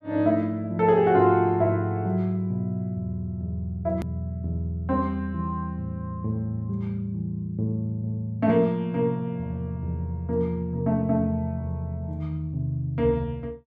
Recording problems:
edit click; at 4 s

